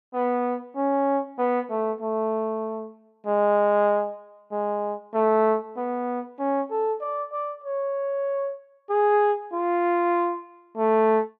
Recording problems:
none

